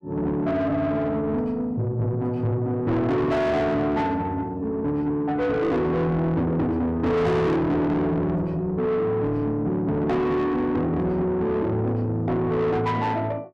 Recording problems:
distorted audio; soft clipping, signal-to-distortion ratio 8 dB

